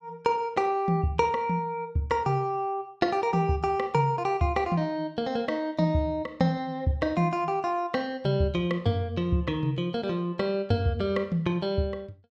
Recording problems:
none

